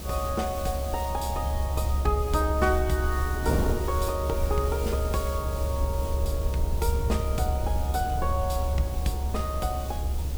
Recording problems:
background hiss; SNR 11 dB
rumble; below 72 Hz, strongest tone 68 Hz, SNR -1 dB
wind on the microphone; below 430 Hz, SNR 8 dB

